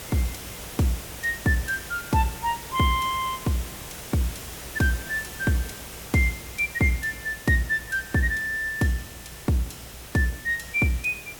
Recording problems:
hiss; slope -3 dB per octave, SNR 12 dB

